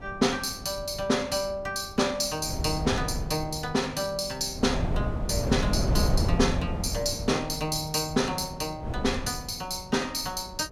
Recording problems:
wind on the microphone; below 230 Hz, SNR 4 dB

